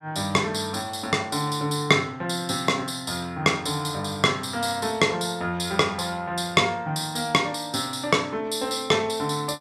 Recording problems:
none

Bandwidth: 14.5 kHz